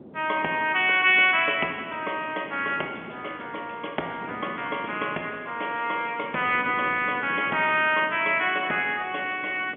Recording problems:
telephone audio; 220 Hz to 3.3 kHz, G.711
wind on the microphone; below 460 Hz, SNR 19 dB

